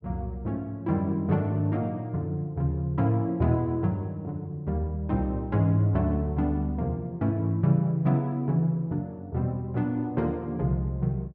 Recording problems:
none

